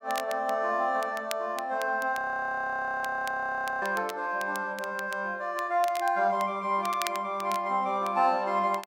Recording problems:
crackle; vinyl, SNR 16 dB
audio freezing; at 2 s for 1.5 s

